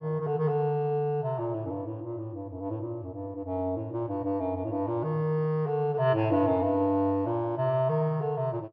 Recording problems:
low-pass filter; nothing above 5.5 kHz

